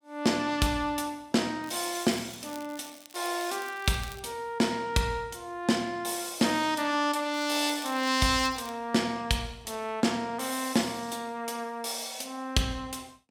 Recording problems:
crackling; from 1.5 to 4 s and from 7.5 to 8.5 s; loose cable, SNR 19 dB

